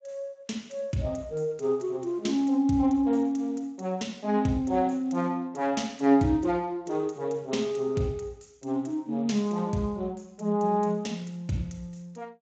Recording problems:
lossy compression; Speex, log-spectral distance 4 dB, nothing above 7.3 kHz

